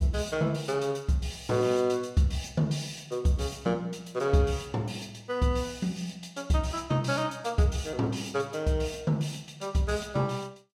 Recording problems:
none

